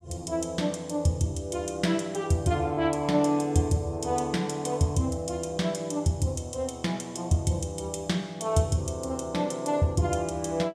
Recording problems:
none

